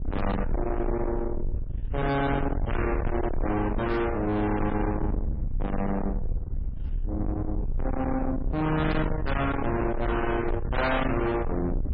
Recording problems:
lossy codec; MP3, log-spectral distance 2 dB, nothing above 5.5 kHz
distorted audio; soft clipping, signal-to-distortion ratio 6 dB
rumble; below 270 Hz, SNR 4 dB

